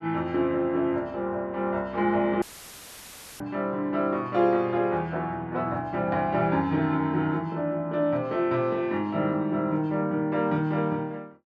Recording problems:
dropout; at 2.5 s for 1 s; filled with static

